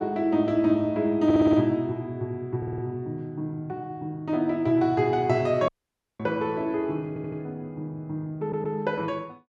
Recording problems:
stutter; 4 times, first at 1.5 s
audio cutting out; at 5.5 s for 0.5 s

